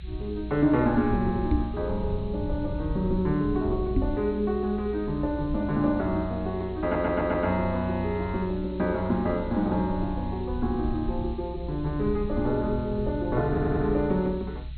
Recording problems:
treble missing; nothing above 4.2 kHz
hiss; SNR 27 dB
rumble; below 92 Hz, SNR 9 dB
microphone bump; at 1.5 s and at 4 s; peak +5 dB vs average level
audio stuttering; at 7 s and at 13 s

